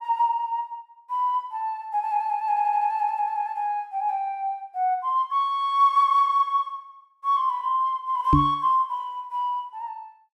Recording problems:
audio stuttering; at 2.5 s
knock on the microphone; at 8.5 s; peak +8 dB vs average level

